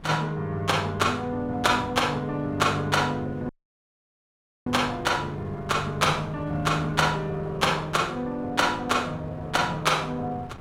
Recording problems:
wind on the microphone; below 470 Hz, SNR 18 dB
audio cutting out; at 3.5 s for 1 s

